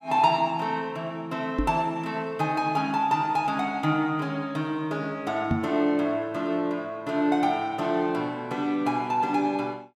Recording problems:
microphone bump; at 1.5 s and at 5.5 s; peak +4 dB vs average level

